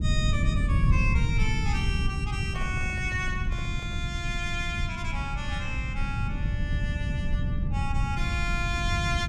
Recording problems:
low-frequency rumble; below 130 Hz, SNR -3 dB
handling noise; from 2.5 to 4 s; peak -8 dB vs average level

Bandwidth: 16 kHz